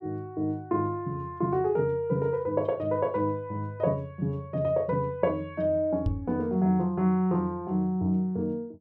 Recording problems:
knock on the microphone; at 6 s; peak +3 dB vs average level

